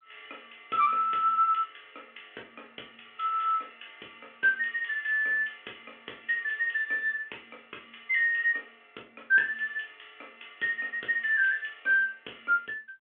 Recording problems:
phone line; 240 Hz to 3.4 kHz, G.726

